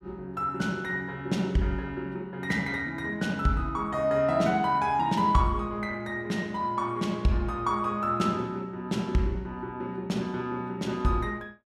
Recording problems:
none

